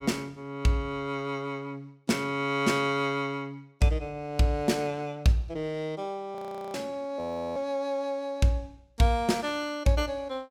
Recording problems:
audio freezing; at 6.5 s and at 7 s

